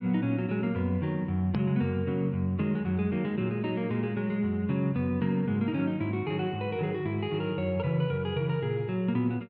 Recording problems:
treble missing; nothing above 5.4 kHz
hard cut with a click; at 1.5 s

